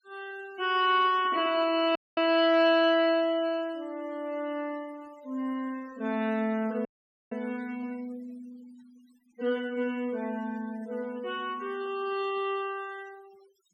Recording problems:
denoising artefacts; signal-to-artefact ratio 23 dB
audio cutting out; at 2 s and at 7 s

